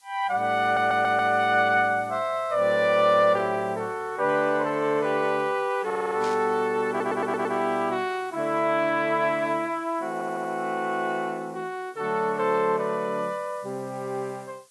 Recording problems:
codec artefacts; AAC, log-spectral distance 3 dB
hiss; slope +3 dB per octave, SNR 30 dB
audio stuttering; 4 times, first at 0.5 s
burst of static; at 6 s; peak -11 dB vs average level

